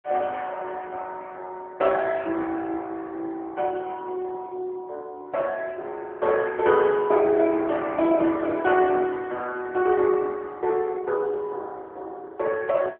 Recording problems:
telephone audio; 280 Hz to 3.3 kHz, AMR-NB

